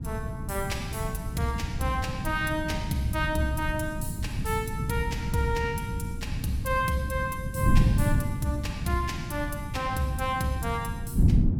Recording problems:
wind noise; below 160 Hz, SNR 1 dB

